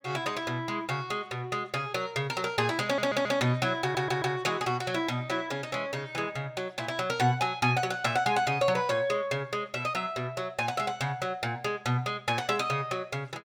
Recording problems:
audio stuttering; at 3 s and at 4 s

